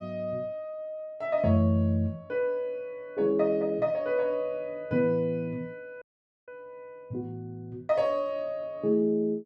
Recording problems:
audio cutting out; at 6 s

